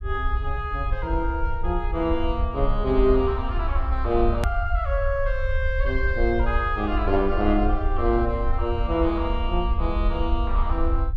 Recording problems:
rumble; below 62 Hz, SNR 2 dB
hard cut with a click; at 4.5 s

